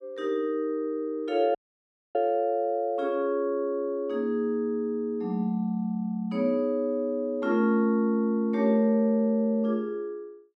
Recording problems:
audio cutting out; at 1.5 s for 0.5 s

